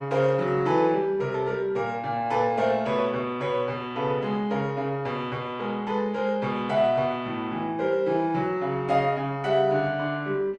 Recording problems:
lossy codec; Opus, log-spectral distance 2 dB

